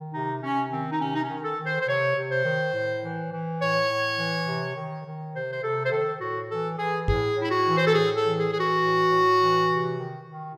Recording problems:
microphone thump; at 7 s; peak +2 dB vs average level

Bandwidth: 15.5 kHz